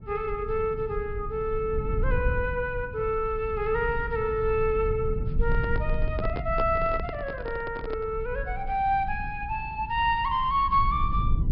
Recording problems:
low-pass filter; nothing above 5.5 kHz
low-frequency rumble; below 88 Hz, SNR 6 dB
handling noise; from 5.5 to 8 s; peak -2 dB vs average level

